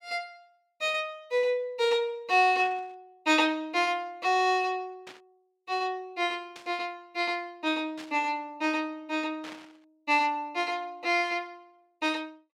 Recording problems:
static burst; 5 times, first at 2.5 s; peak -11 dB vs average level

